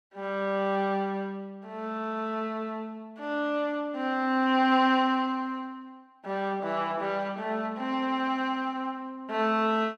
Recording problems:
none

